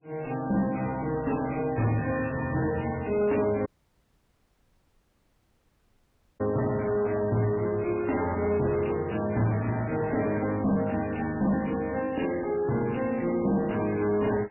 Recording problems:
lossy codec; MP3, log-spectral distance 6 dB, nothing above 2.7 kHz
distorted audio; soft clipping, signal-to-distortion ratio 11 dB
dropout; at 3.5 s for 2.5 s

